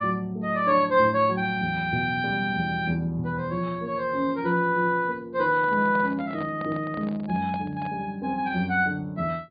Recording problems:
treble cut off; nothing above 4.7 kHz
microphone handling noise; from 5.5 to 8 s; peak -8 dB vs average level

